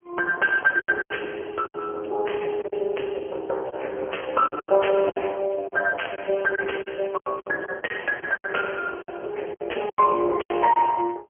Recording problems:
phone line; 320 Hz to 2.8 kHz, AMR-NB
lost packets; 11% of the sound replaced, filled with silence

